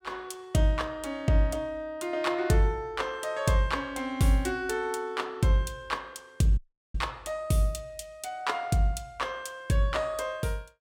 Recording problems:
dropout; at 6.5 s

